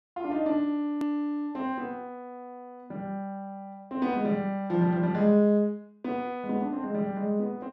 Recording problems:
edit click; at 1 s

